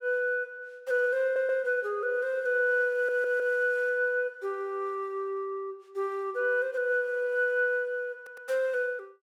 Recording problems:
stutter; at 1 s, at 3 s and at 8 s

